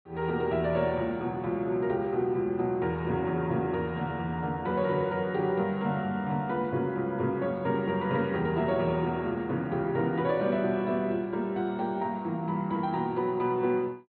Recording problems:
low-pass filter; nothing above 4.4 kHz

